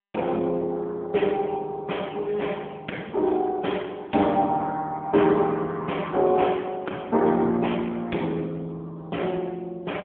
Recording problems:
phone line; 260 Hz to 3.4 kHz, AMR-NB

